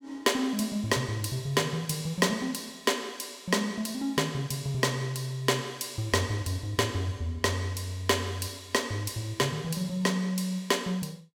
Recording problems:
none

